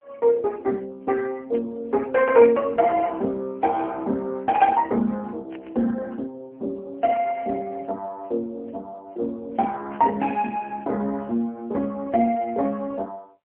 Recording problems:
phone line; 220 Hz to 3.2 kHz, AMR-NB
burst of static; 5 times, first at 1.5 s; peak -15 dB vs average level

